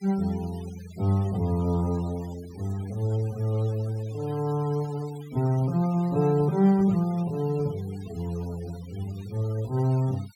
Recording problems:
noise reduction artefacts; signal-to-artefact ratio 22 dB

